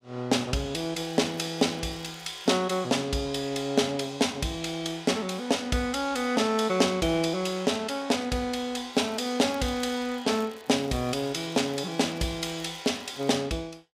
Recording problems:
crackling; from 1 to 2.5 s and from 9 to 13 s; loose cable, SNR 25 dB

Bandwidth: 15.5 kHz